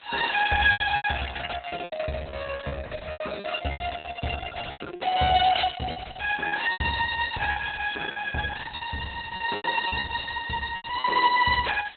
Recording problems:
codec artefacts; Opus, log-spectral distance 11 dB, nothing above 4 kHz
background hiss; SNR 24 dB
packet loss; 11% of the sound replaced, filled with repeated pitch periods

